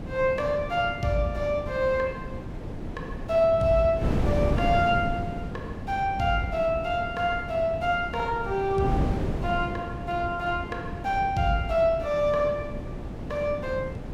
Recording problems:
wind on the microphone; below 310 Hz, SNR 7 dB

